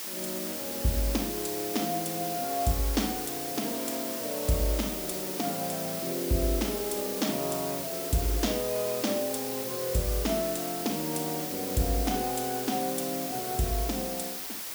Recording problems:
hiss; slope 0 dB per octave, SNR 2 dB

